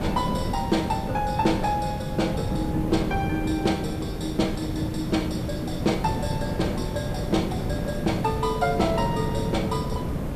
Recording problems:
background hiss; slope -4 dB per octave, SNR 17 dB
wind noise; below 320 Hz, SNR 2 dB

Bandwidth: 14.5 kHz